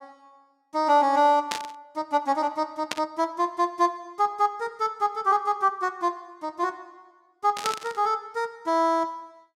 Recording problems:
burst of static; at 1.5 s, at 3 s and at 7.5 s; peak +1 dB vs average level

